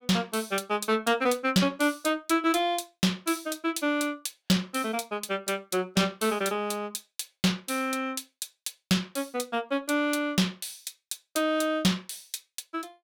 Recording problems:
distorted audio; soft clipping, signal-to-distortion ratio 12 dB

